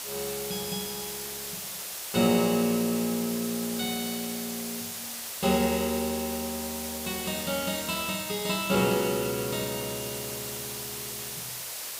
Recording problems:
background hiss; slope +1 dB per octave, SNR 5 dB

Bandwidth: 15.5 kHz